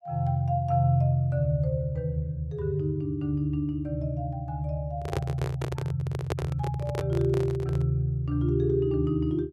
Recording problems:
handling noise; from 5 to 8 s; peak +1 dB vs average level

